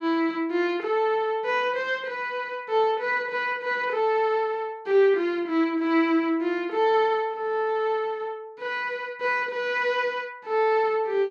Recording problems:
none

